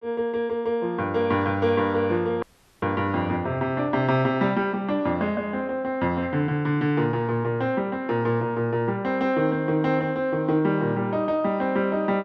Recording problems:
audio cutting out; at 2.5 s

